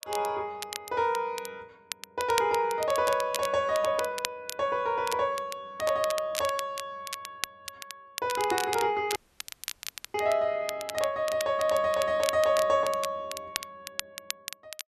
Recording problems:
crackle; vinyl, SNR 10 dB
dropout; at 9 s for 1 s

